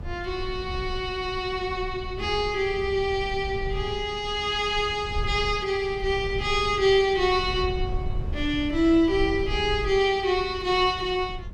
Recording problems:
low-frequency rumble; below 92 Hz, SNR 11 dB

